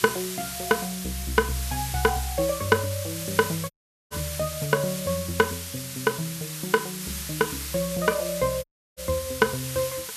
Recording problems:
background hiss; slope +3 dB per octave, SNR 6 dB
audio cutting out; at 3.5 s and at 8.5 s

